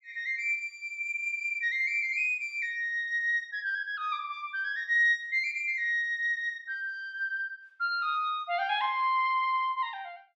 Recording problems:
none

